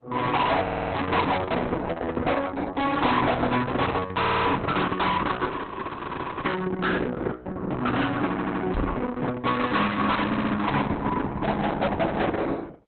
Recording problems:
codec artefacts; Opus, log-spectral distance 4 dB, nothing above 4 kHz
distorted audio; soft clipping, signal-to-distortion ratio 5 dB
stutter; 4 times, first at 0.5 s
frozen audio; at 5.5 s for 1 s
microphone bump; at 8.5 s; peak +3 dB vs average level

